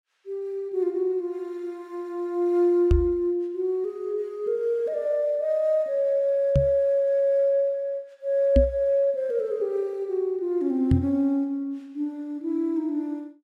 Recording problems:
microphone bump; 4 times, first at 3 s; peak +7 dB vs average level

